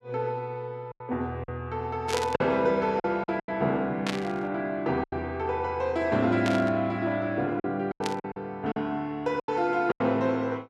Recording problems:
packet loss; 8% of the sound replaced, filled with silence
burst of static; 4 times, first at 2 s; peak +1 dB vs average level

